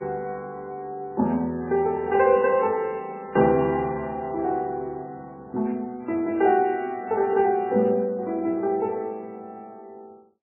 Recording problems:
codec artefacts; MP3, log-spectral distance 2 dB, nothing above 2.7 kHz

